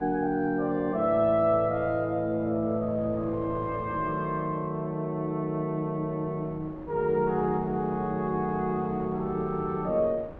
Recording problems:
wind noise; below 600 Hz, SNR 18 dB

